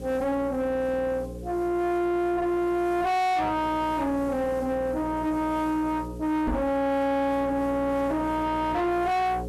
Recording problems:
distortion; soft clipping, signal-to-distortion ratio 5 dB
electrical hum; 60 Hz, harmonics up to 540 Hz, SNR 12 dB
hiss; slope 0 dB per octave, SNR 29 dB
microphone bump; at 6.5 s; peak +2 dB vs average level

